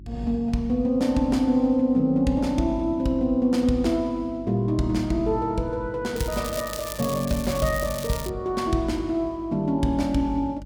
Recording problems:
hum; 50 Hz, harmonics up to 350 Hz, SNR 20 dB
crackle; from 6 to 8.5 s; loose cable, SNR 11 dB

